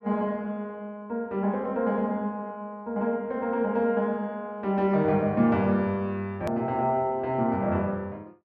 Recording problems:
hard cut with a click; at 6.5 s

